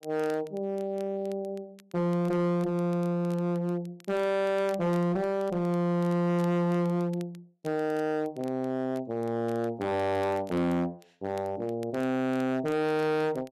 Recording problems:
distorted audio; hard clipping, uneven, signal-to-distortion ratio 6 dB
crackle; vinyl, SNR 28 dB

